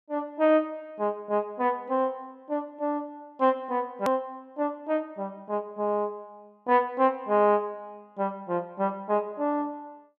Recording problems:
click at an edit; at 4 s

